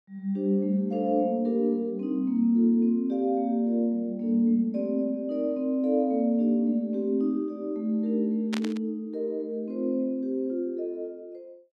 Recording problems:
static burst; at 8.5 s; peak -4 dB vs average level

